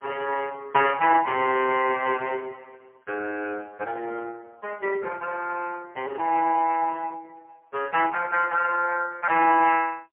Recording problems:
telephone audio; 280 Hz to 2.8 kHz, AMR-NB, then MP3

